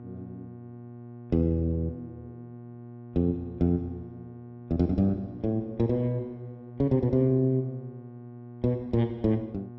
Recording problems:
hum; 60 Hz, harmonics up to 840 Hz, SNR 16 dB

